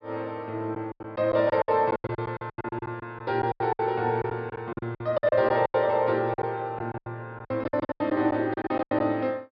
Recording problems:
low-pass filter; nothing above 5.5 kHz
packet loss; 18% of the sound replaced, filled with silence

